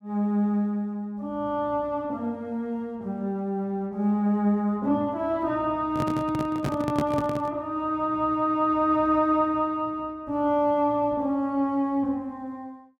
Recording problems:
microphone handling noise; from 6 to 7.5 s; peak +1 dB vs average level

